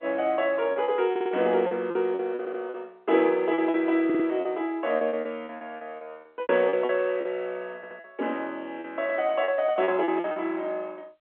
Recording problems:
telephone audio; 240 Hz to 3.4 kHz, G.711
lost packets; 13% of the sound replaced, filled with repeated pitch periods
stutter; 4 times, first at 1 s

